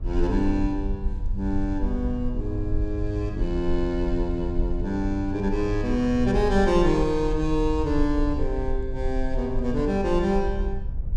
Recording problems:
rumble; below 56 Hz, SNR 5 dB

